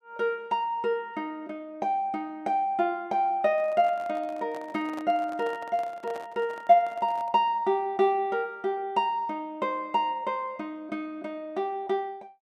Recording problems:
microphone handling noise; from 3.5 to 7.5 s; peak -9 dB vs average level

